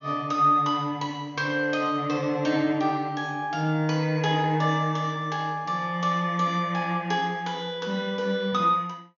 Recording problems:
treble missing; nothing above 6.8 kHz

